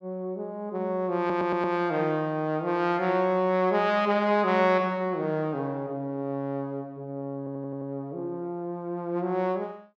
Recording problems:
stutter; at 1 s and at 7.5 s

